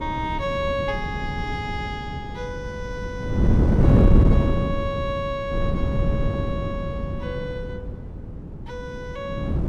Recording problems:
wind noise; below 220 Hz, SNR -6 dB

